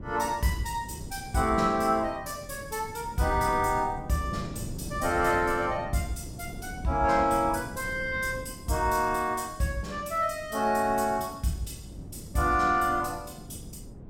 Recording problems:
wind noise; below 240 Hz, SNR 14 dB

